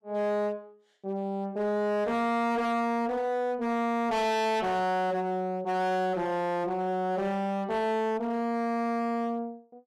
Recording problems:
distortion; hard clipping, signal-to-distortion ratio 7 dB

